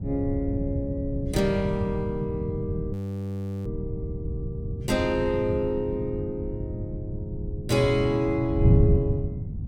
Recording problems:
wind noise; below 150 Hz, SNR 2 dB
frozen audio; at 3 s for 0.5 s

